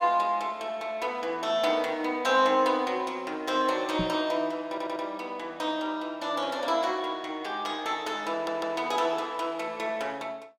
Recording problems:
microphone thump; at 4 s; peak +1 dB vs average level
audio stuttering; at 4.5 s and at 8.5 s

